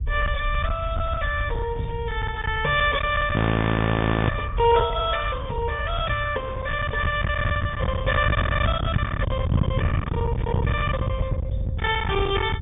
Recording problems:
low-pass filter; nothing above 3.6 kHz
lossy codec; Opus, log-spectral distance 2 dB
distorted audio; hard clipping, signal-to-distortion ratio 8 dB
rumble; below 220 Hz, SNR 1 dB
audio freezing; at 3.5 s for 1 s

